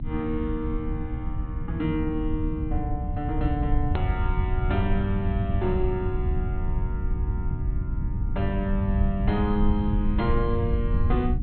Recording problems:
treble missing; nothing above 4.2 kHz
electrical hum; 60 Hz, harmonics up to 300 Hz, SNR 9 dB
rumble; below 90 Hz, SNR 0 dB
edit click; at 4 s

